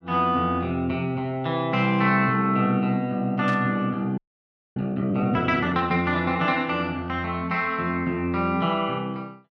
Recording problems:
static burst; at 3.5 s; peak -9 dB vs average level
audio freezing; at 4 s for 0.5 s

